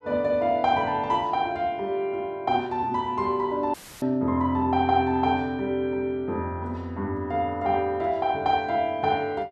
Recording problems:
audio cutting out; at 3.5 s; filled with static

